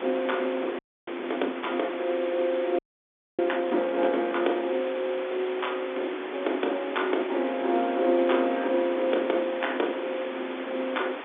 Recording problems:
phone line; 240 Hz to 3.6 kHz, G.711
background hiss; SNR 9 dB
wind on the microphone; below 430 Hz, SNR 20 dB
frozen audio; at 1 s and at 3 s for 0.5 s

